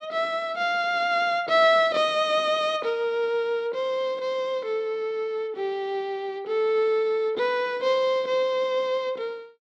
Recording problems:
none

